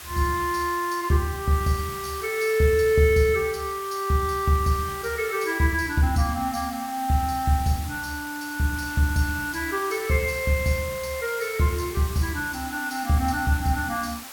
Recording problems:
background hiss; slope 0 dB per octave, SNR 13 dB

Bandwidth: 17 kHz